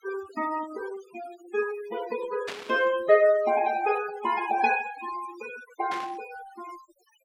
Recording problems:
denoising artefacts; signal-to-artefact ratio 15 dB
static burst; at 2.5 s and at 6 s; peak -4 dB vs average level

